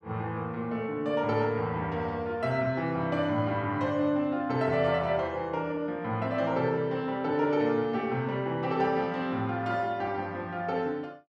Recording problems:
none

